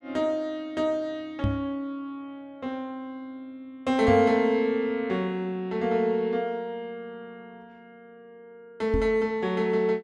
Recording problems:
microphone thump; at 1.5 s, at 4 s and at 9 s; peak +3 dB vs average level

